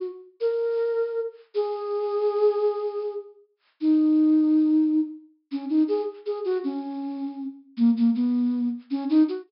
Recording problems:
treble missing; nothing above 5.3 kHz

